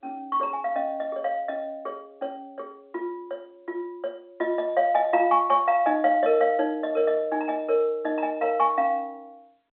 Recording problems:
phone line; 240 Hz to 3.7 kHz, G.711

